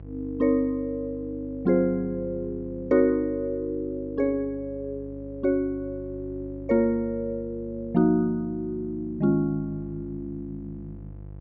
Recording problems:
electrical hum; 50 Hz, harmonics up to 650 Hz, SNR 16 dB

